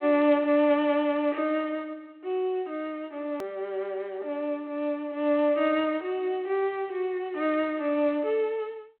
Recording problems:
phone line; 240 Hz to 3.2 kHz, G.726
click at an edit; at 3.5 s

